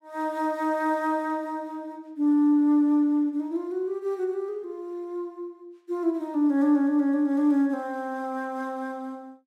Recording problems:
none

